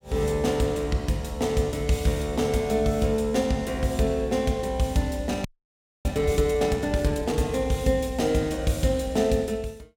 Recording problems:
audio freezing; at 5.5 s for 0.5 s

